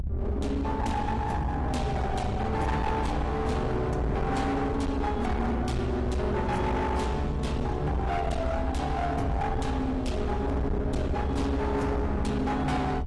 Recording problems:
lossy codec; AAC, log-spectral distance 2 dB
distorted audio; hard clipping, uneven, signal-to-distortion ratio 7 dB
low-frequency rumble; below 100 Hz, SNR 4 dB

